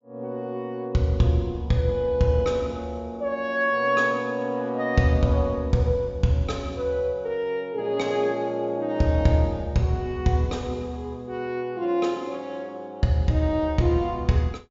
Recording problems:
treble missing; nothing above 7.4 kHz

